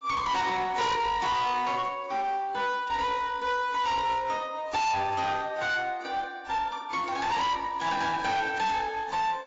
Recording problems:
lossy codec; AAC, log-spectral distance 3 dB, nothing above 7.3 kHz
distortion; hard clipping, uneven, signal-to-distortion ratio 5 dB

